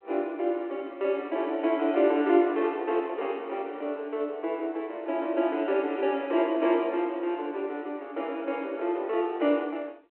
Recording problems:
telephone audio; 280 Hz to 3.1 kHz, G.726

